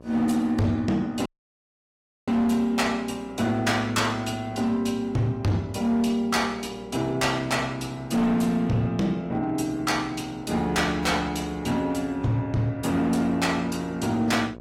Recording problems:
lossy codec; AAC, log-spectral distance 2 dB, nothing above 17.7 kHz
distorted audio; hard clipping, signal-to-distortion ratio 11 dB
electrical hum; 60 Hz, harmonics up to 1.3 kHz, SNR 21 dB
audio cutting out; at 1.5 s for 1 s

